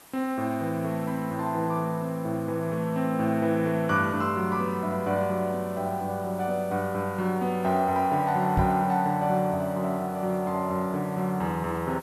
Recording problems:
hiss; SNR 23 dB
microphone bump; at 8.5 s; peak +4 dB vs average level

